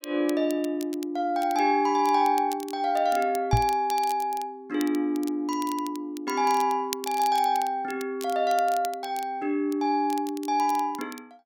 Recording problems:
crackling; vinyl, SNR 17 dB
microphone bump; at 3.5 s; peak +7 dB vs average level

